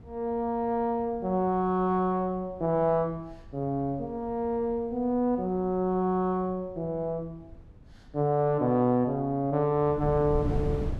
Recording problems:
wind on the microphone; below 170 Hz, SNR 16 dB

